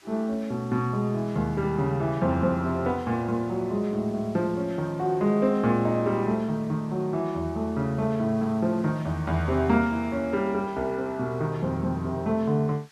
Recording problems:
hiss; SNR 27 dB

